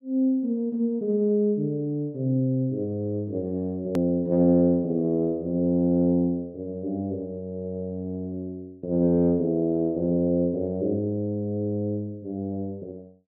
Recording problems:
edit click; at 4 s

